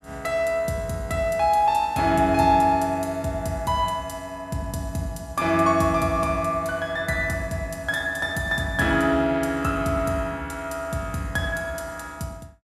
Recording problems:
none

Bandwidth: 15 kHz